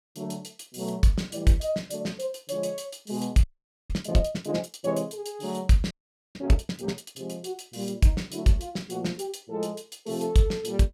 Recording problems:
audio freezing; at 3.5 s and at 6 s

